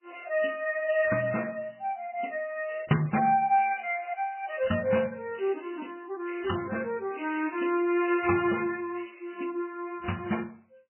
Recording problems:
lossy compression; MP3, log-spectral distance 5 dB, nothing above 2.4 kHz

